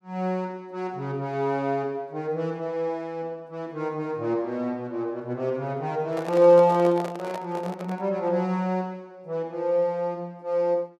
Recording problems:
microphone handling noise; from 6 to 8 s; peak -5 dB vs average level

